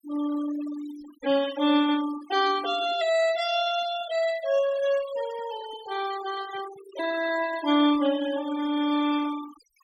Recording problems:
noise reduction artefacts; signal-to-artefact ratio 15 dB

